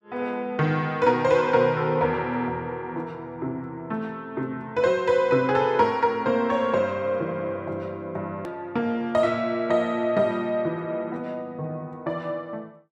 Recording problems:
edit click; at 8.5 s

